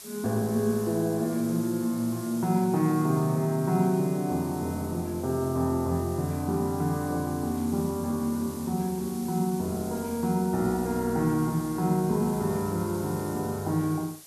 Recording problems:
hiss; SNR 16 dB

